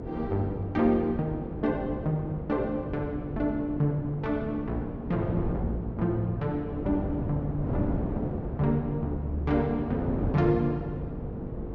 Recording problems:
treble cut off; nothing above 7.3 kHz
hum; 50 Hz, harmonics up to 500 Hz, SNR 14 dB
wind on the microphone; below 330 Hz, SNR 6 dB

